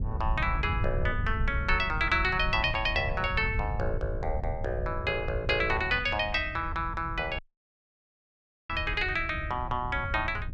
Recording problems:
wind noise; below 96 Hz, SNR 6 dB
dropout; at 7.5 s for 1.5 s

